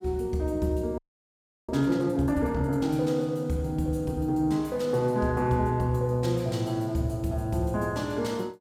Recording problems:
frozen audio; at 1 s for 0.5 s

